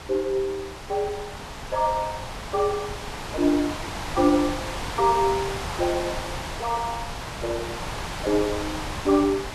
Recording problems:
wind on the microphone; below 2.7 kHz, SNR 7 dB

